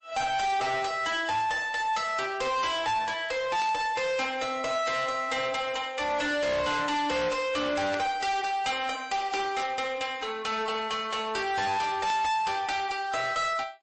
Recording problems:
lossy codec; MP3, log-spectral distance 3 dB, nothing above 8 kHz
distorted audio; hard clipping, uneven, signal-to-distortion ratio 7 dB
burst of static; 4 times, first at 3.5 s; peak -7 dB vs average level

